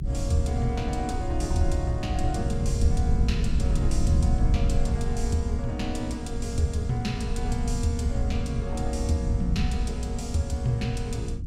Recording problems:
low-frequency rumble; below 100 Hz, SNR -1 dB

